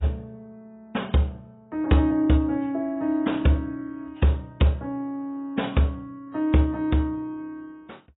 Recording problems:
codec artefacts; AAC, log-spectral distance 2 dB, nothing above 3.8 kHz

